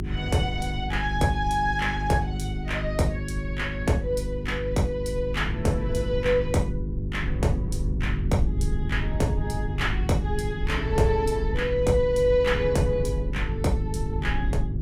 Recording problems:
hum; 50 Hz, harmonics up to 400 Hz, SNR 5 dB
low-frequency rumble; below 96 Hz, SNR 7 dB

